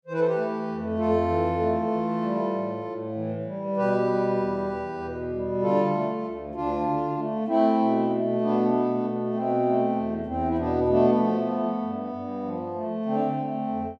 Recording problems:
none

